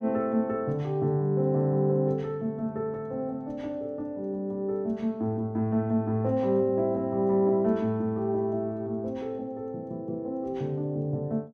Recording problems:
none

